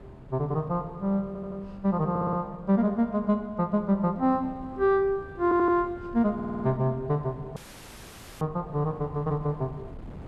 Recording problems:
wind noise; below 280 Hz, SNR 19 dB
stutter; 4 times, first at 1.5 s
dropout; at 7.5 s for 1 s

